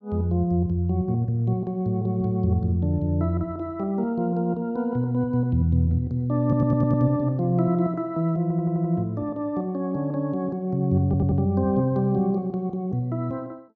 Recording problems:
audio stuttering; at 6.5 s, at 8.5 s and at 11 s

